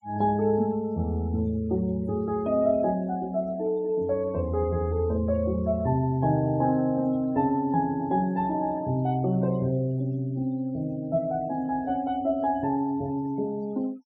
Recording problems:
noise reduction artefacts; signal-to-artefact ratio 25 dB

